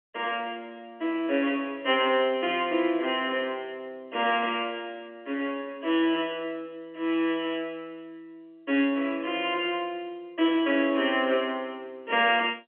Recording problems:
phone line; 260 Hz to 3.3 kHz, G.711

